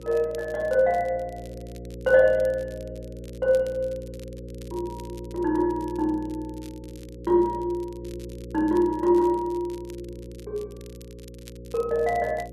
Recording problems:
hum; 60 Hz, harmonics up to 540 Hz, SNR 15 dB
crackle; vinyl, SNR 27 dB

